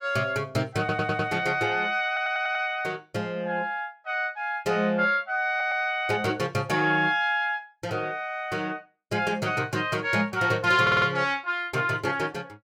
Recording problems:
stutter; 4 times, first at 1 s

